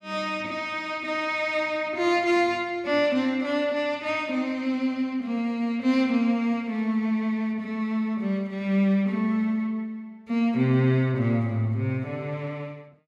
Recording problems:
none

